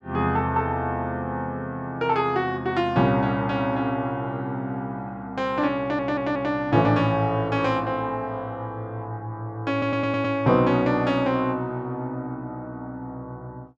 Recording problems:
audio stuttering; at 6 s and at 9.5 s

